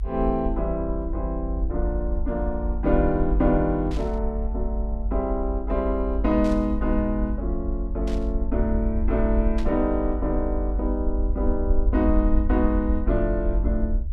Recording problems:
low-frequency rumble; below 52 Hz, strongest tone 48 Hz, SNR 2 dB
burst of static; 4 times, first at 4 s; peak -10 dB vs average level

